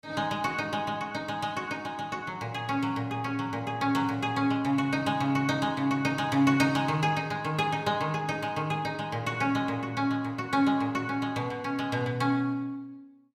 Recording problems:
none

